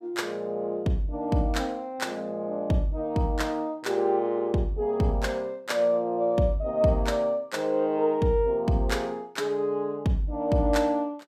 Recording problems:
none

